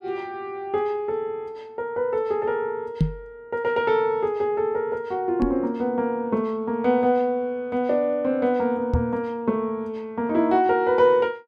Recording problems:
knock on the microphone; at 3 s, at 5.5 s and at 9 s; peak +7 dB vs average level

